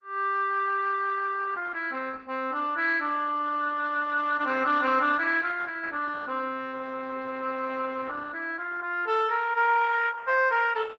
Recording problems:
lossy codec; Opus, log-spectral distance 3 dB

